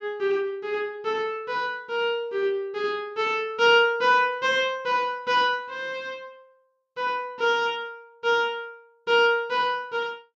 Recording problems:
none

